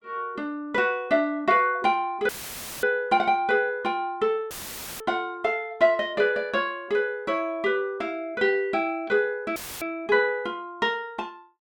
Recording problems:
audio cutting out; at 2.5 s for 0.5 s, at 4.5 s and at 9.5 s; filled with static

